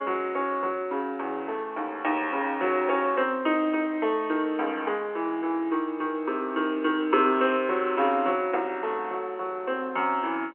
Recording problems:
telephone audio; 280 Hz to 3.3 kHz, G.711

